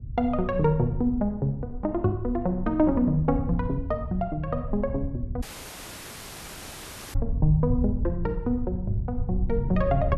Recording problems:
rumble; below 100 Hz, SNR 7 dB
wind noise; below 180 Hz, SNR 17 dB
dropout; at 5.5 s for 1.5 s

